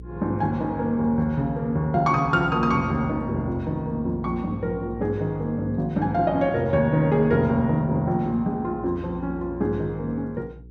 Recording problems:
hum; 60 Hz, harmonics up to 480 Hz, SNR 18 dB

